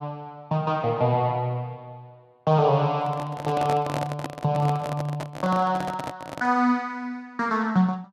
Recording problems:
microphone handling noise; from 3 to 6.5 s; peak -2 dB vs average level

